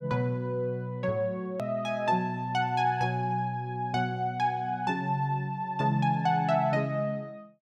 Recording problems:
click at an edit; at 1.5 s

